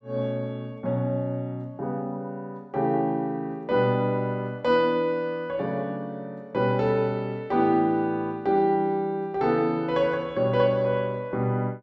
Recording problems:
none

